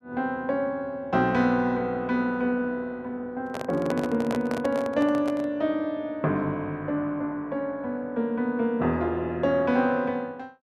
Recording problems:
microphone handling noise; from 3.5 to 5.5 s; peak -1 dB vs average level

